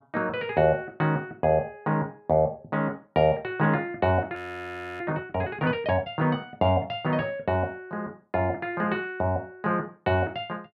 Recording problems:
audio freezing; at 4.5 s for 0.5 s

